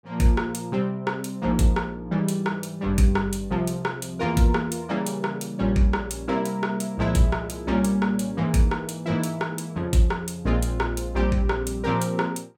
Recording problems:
none

